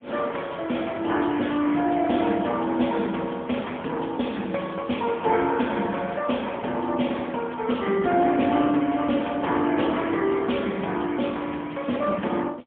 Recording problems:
telephone audio; 190 Hz to 3.4 kHz, AMR-NB, then MP3

